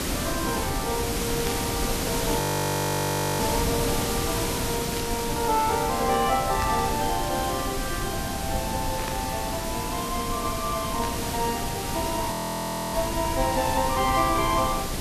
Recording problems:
background hiss; SNR 2 dB
rumble; below 150 Hz, SNR 8 dB
burst of static; 5 times, first at 1.5 s; peak -3 dB vs average level
audio freezing; at 2.5 s for 1 s and at 12 s for 0.5 s

